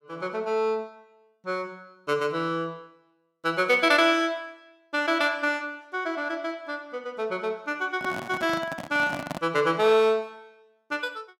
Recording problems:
handling noise; from 8 to 9.5 s; peak -2 dB vs average level

